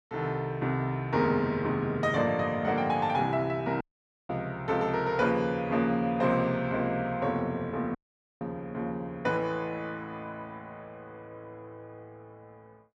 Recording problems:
dropout; at 4 s and at 8 s

